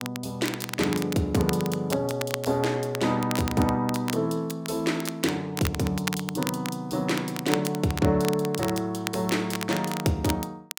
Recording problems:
crackling; vinyl, SNR 9 dB

